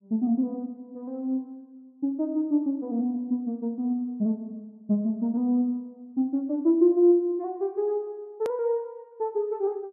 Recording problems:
edit click; at 8.5 s

